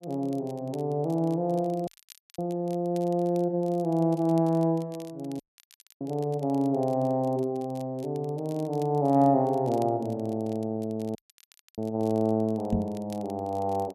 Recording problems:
crackling; vinyl, SNR 27 dB
audio cutting out; at 2 s for 0.5 s, at 5.5 s for 0.5 s and at 11 s for 0.5 s
microphone bump; at 13 s; peak +4 dB vs average level

